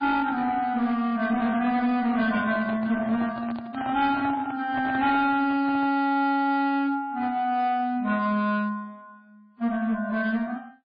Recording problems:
lossy compression; AAC, then MP3, log-spectral distance 2 dB, nothing above 4.2 kHz
distorted audio; hard clipping, uneven, signal-to-distortion ratio 11 dB
microphone handling noise; from 2 to 6 s; peak -7 dB vs average level

